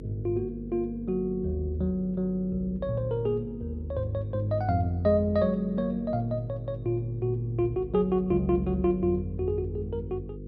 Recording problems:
electrical hum; 50 Hz, harmonics up to 500 Hz, SNR 12 dB

